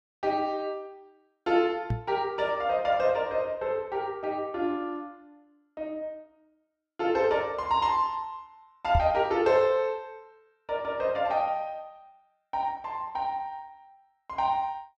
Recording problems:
knock on the microphone; at 2 s and at 9 s; peak +4 dB vs average level

